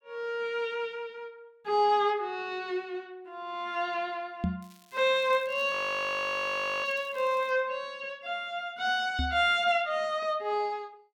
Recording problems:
knock on the microphone; at 4.5 s and at 9 s; peak +3 dB vs average level
crackling; from 4.5 to 7.5 s; loose cable, SNR 28 dB
frozen audio; at 5.5 s for 1 s

